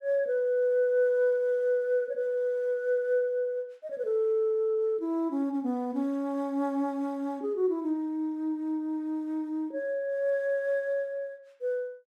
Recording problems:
none

